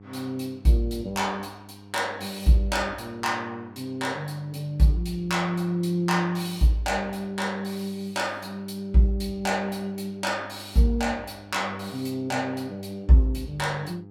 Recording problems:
hum; 50 Hz, harmonics up to 900 Hz, SNR 20 dB

